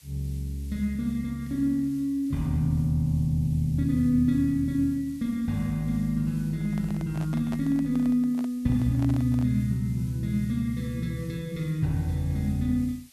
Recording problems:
hiss; SNR 26 dB
microphone handling noise; from 6.5 to 9.5 s; peak -8 dB vs average level

